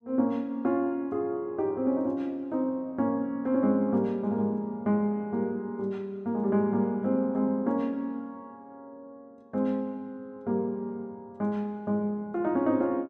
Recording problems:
none

